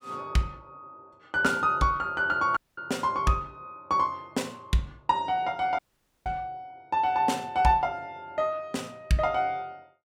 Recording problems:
audio cutting out; at 2.5 s and at 6 s

